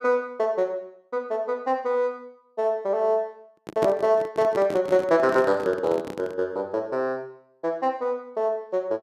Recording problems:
microphone handling noise; from 3.5 to 6.5 s; peak +2 dB vs average level

